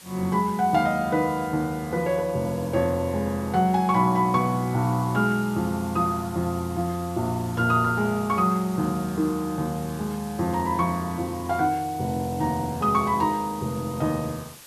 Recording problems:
background hiss; slope 0 dB per octave, SNR 19 dB

